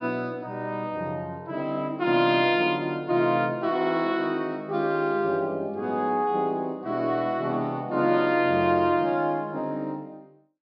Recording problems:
treble cut off; nothing above 5.5 kHz

